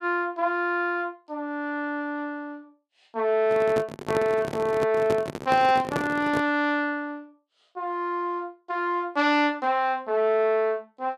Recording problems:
handling noise; from 3.5 to 6.5 s; peak +1 dB vs average level

